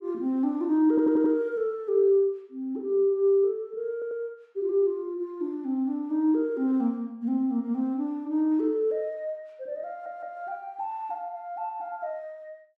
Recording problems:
stutter; at 1 s, at 4 s and at 10 s

